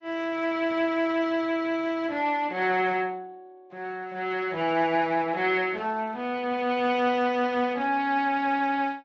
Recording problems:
codec artefacts; Speex, then MP3, log-spectral distance 2 dB

